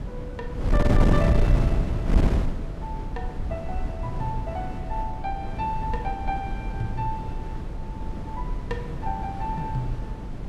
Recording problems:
wind on the microphone; below 150 Hz, SNR -5 dB

